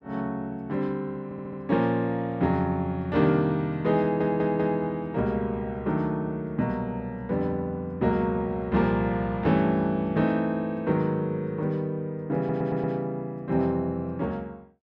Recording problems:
audio stuttering; at 1 s, at 4 s and at 12 s

